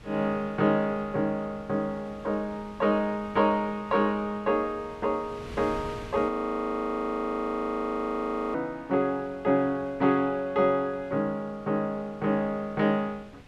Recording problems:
wind noise; below 1.4 kHz, SNR 20 dB
frozen audio; at 6.5 s for 2 s

